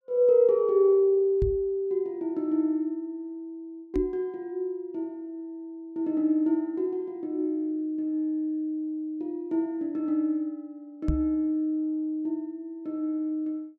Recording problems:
microphone thump; at 1.5 s, at 4 s and at 11 s; peak +4 dB vs average level

